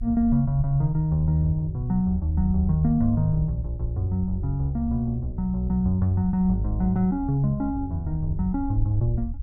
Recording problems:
low-frequency rumble; below 70 Hz, SNR 11 dB

